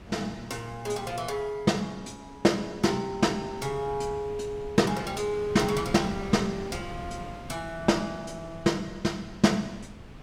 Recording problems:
wind noise; below 490 Hz, SNR 15 dB

